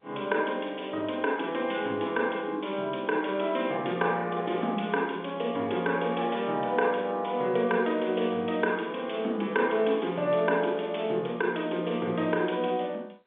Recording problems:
telephone audio; 240 Hz to 3.6 kHz, G.711

